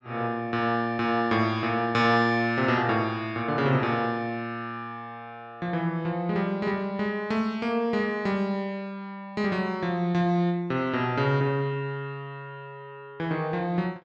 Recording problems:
none

